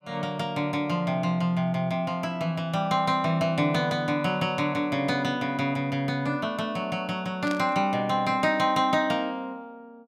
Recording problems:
burst of static; at 7.5 s; peak -7 dB vs average level

